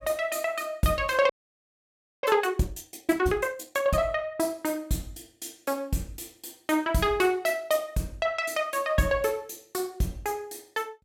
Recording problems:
audio freezing; at 1.5 s for 1 s

